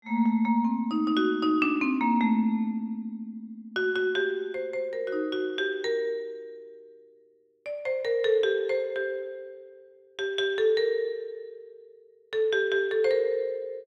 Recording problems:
none

